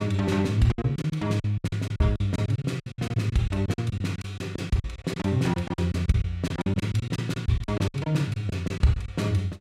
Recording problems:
packet loss; 17% of the sound replaced, filled with silence

